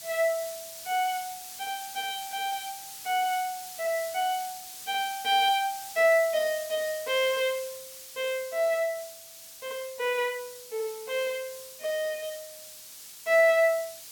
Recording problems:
background hiss; slope +3 dB per octave, SNR 13 dB

